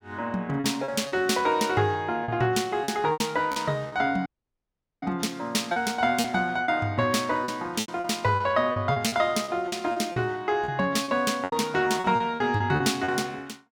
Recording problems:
packet loss; 11% of the sound replaced, filled with repeated pitch periods
audio cutting out; at 4.5 s for 1 s

